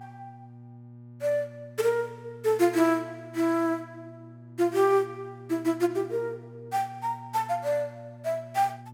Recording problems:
mains hum; 60 Hz, harmonics up to 600 Hz, SNR 19 dB

